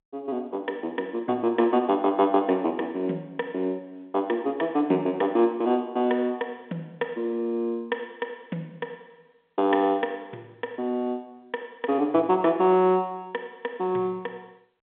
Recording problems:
phone line; 190 Hz to 3.6 kHz, G.711

